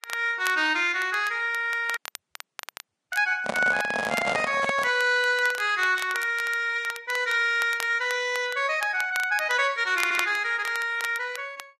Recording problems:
lossy codec; Vorbis, log-spectral distance 2 dB, nothing above 10.4 kHz
crackling; vinyl, SNR 15 dB
dropout; at 2 s for 1 s
handling noise; from 3.5 to 5 s; peak 0 dB vs average level
audio stuttering; at 10 s

